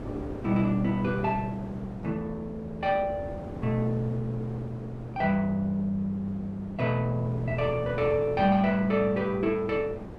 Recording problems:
wind noise; below 480 Hz, SNR 12 dB

